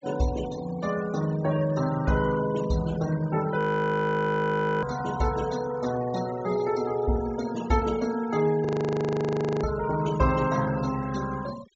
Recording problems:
low-pass filter; nothing above 7.6 kHz
denoising artefacts; signal-to-artefact ratio 16 dB
frozen audio; at 3.5 s for 1 s and at 8.5 s for 1 s

